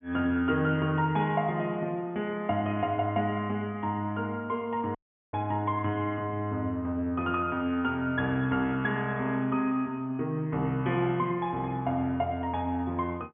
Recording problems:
low-pass filter; nothing above 3.4 kHz
dropout; at 5 s

